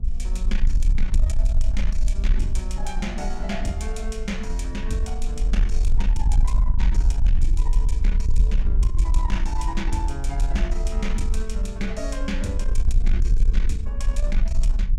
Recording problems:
distorted audio; soft clipping, signal-to-distortion ratio 11 dB
mains hum; 60 Hz, harmonics up to 480 Hz, SNR 11 dB
low-frequency rumble; below 46 Hz, SNR -7 dB

